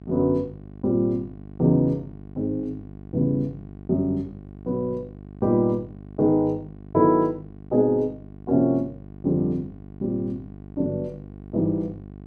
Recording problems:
hum; 50 Hz, harmonics up to 1.1 kHz, SNR 17 dB

